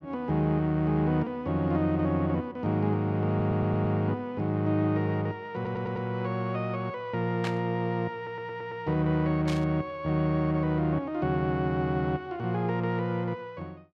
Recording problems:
audio stuttering; at 3.5 s, at 5.5 s and at 8 s
static burst; at 7.5 s and at 9.5 s; peak -3 dB vs average level

